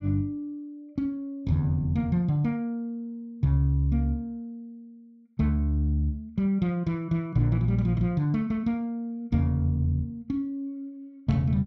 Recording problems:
none

